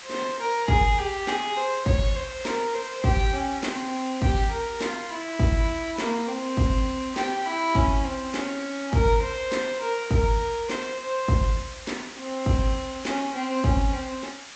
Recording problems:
treble cut off; nothing above 8 kHz
lossy compression; MP3, log-spectral distance 9 dB
hiss; slope +1 dB per octave, SNR 14 dB

